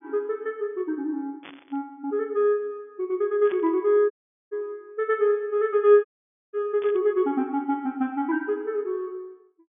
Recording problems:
treble missing; nothing above 3.5 kHz
static burst; at 1.5 s, at 3.5 s and at 7 s; peak -13 dB vs average level
audio cutting out; at 4 s and at 6 s

